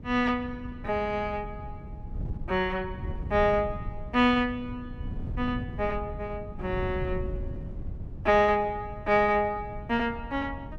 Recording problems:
wind noise; below 140 Hz, SNR 11 dB

